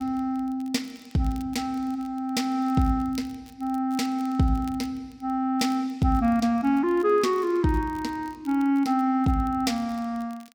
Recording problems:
crackle; vinyl, SNR 29 dB

